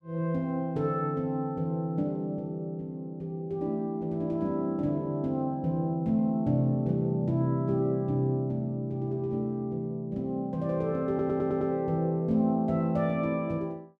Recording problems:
audio stuttering; at 11 s

